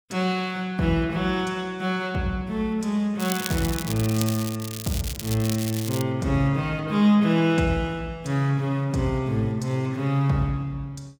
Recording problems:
crackling; from 3 to 6 s; loose cable, SNR 9 dB

